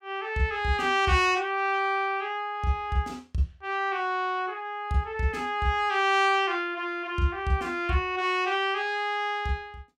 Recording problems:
none

